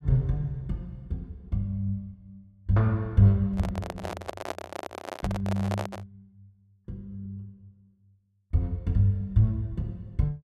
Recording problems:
handling noise; from 3.5 to 6 s; peak -1 dB vs average level

